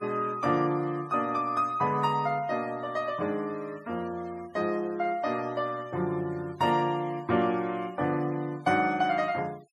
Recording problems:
denoising artefacts; signal-to-artefact ratio 25 dB

